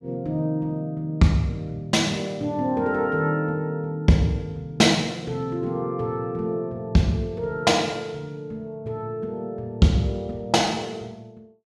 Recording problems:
none

